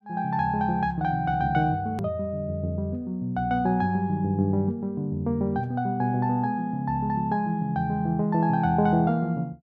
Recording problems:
edit click; at 2 s

